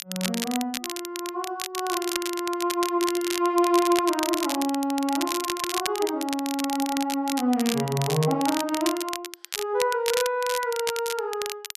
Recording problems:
crackle; vinyl, SNR 6 dB

